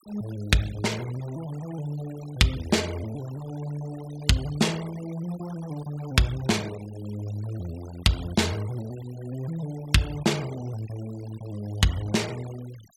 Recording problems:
denoising artefacts; signal-to-artefact ratio 18 dB

